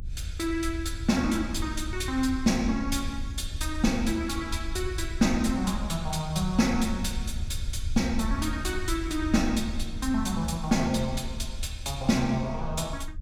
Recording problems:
rumble; below 74 Hz, SNR 8 dB

